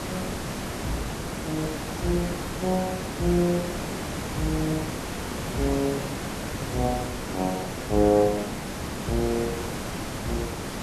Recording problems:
hiss; slope -5 dB per octave, SNR 4 dB

